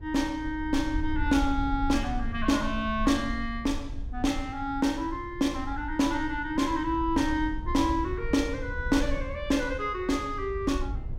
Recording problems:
low-frequency rumble; below 68 Hz, SNR 9 dB

